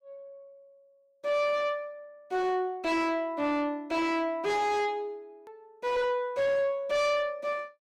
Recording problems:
distortion; soft clipping, signal-to-distortion ratio 10 dB
edit click; at 5.5 s

